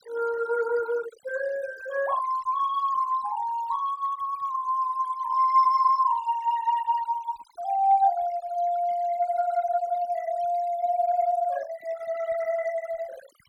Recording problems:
noise reduction artefacts; signal-to-artefact ratio 20 dB

